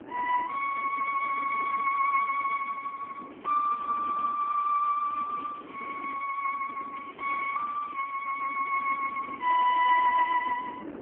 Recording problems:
telephone audio; 650 Hz to 2.3 kHz, AMR-NB
wind noise; below 520 Hz, SNR 18 dB
crackling; from 3.5 to 6 s, from 7 to 8 s and at 9 s; loose cable, SNR 27 dB

